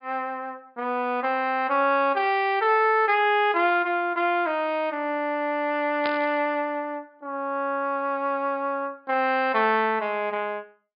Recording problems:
low-pass filter; nothing above 5.1 kHz
burst of static; at 6 s; peak -4 dB vs average level

